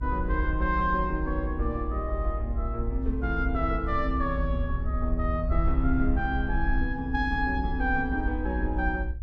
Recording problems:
rumble; below 60 Hz, SNR 2 dB

